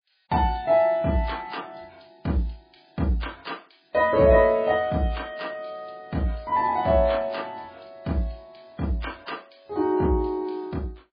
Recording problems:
codec artefacts; MP3, log-spectral distance 4 dB, nothing above 4.8 kHz

